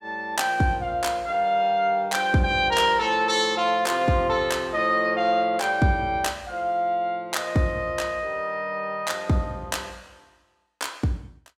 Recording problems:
none

